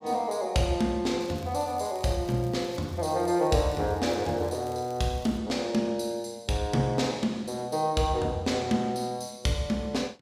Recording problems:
crackling; from 1 to 5.5 s; loose cable, SNR 24 dB

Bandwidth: 15.5 kHz